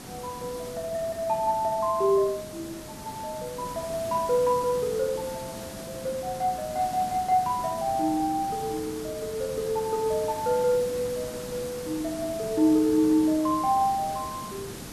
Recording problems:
background hiss; slope -4 dB per octave, SNR 12 dB

